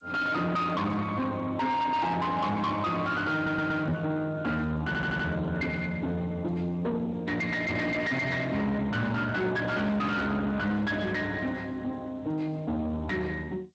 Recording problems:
lossy compression; Speex, then G.722, log-spectral distance 3 dB, nothing above 8 kHz
distorted audio; soft clipping, signal-to-distortion ratio 6 dB
stutter; at 3.5 s and at 5 s
knock on the microphone; at 4 s; peak +3 dB vs average level

